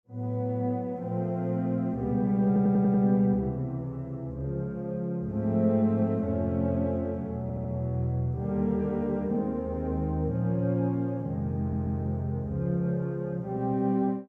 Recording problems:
audio stuttering; at 2.5 s, at 7.5 s and at 12 s

